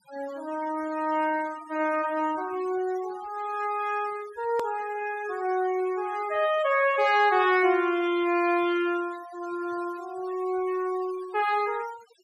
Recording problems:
noise reduction artefacts; signal-to-artefact ratio 19 dB
hard cut with a click; at 4.5 s

